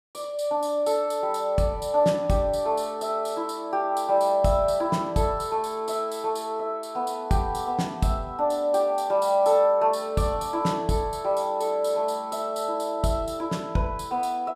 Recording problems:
none

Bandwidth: 14.5 kHz